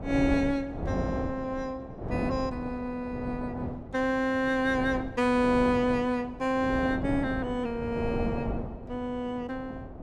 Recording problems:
wind noise; below 480 Hz, SNR 7 dB

